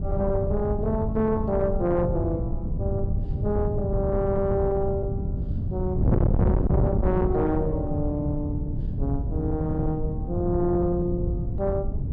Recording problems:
distortion; soft clipping, signal-to-distortion ratio 6 dB
wind on the microphone; below 160 Hz, SNR 1 dB

